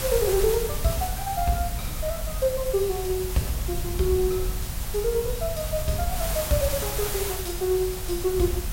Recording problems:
hiss; slope -2 dB per octave, SNR 6 dB
rumble; below 92 Hz, SNR 7 dB

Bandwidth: 16 kHz